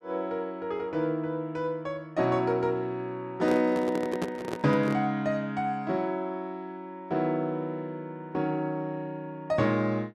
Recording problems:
microphone handling noise; from 3.5 to 5 s; peak +1 dB vs average level

